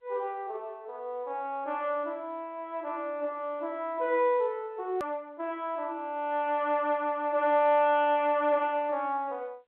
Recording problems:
telephone audio; 300 Hz to 3.5 kHz, G.711
hard cut with a click; at 5 s

